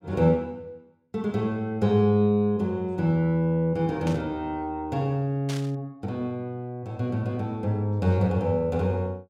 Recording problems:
burst of static; at 4 s and at 5.5 s; peak -7 dB vs average level

